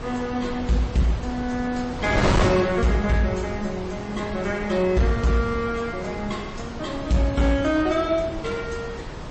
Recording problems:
lossy compression; MP3, then MP3, log-spectral distance 3 dB, nothing above 7.6 kHz
distorted audio; hard clipping, signal-to-distortion ratio 11 dB
wind noise; below 930 Hz, SNR 7 dB

